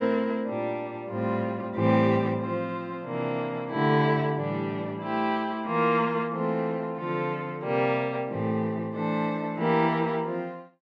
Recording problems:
none

